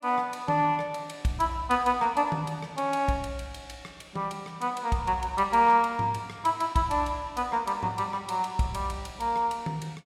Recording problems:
none

